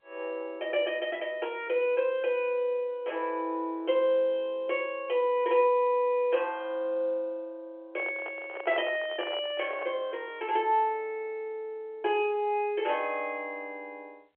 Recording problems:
phone line; 320 Hz to 3.3 kHz, G.711
handling noise; from 8 to 10 s; peak -6 dB vs average level

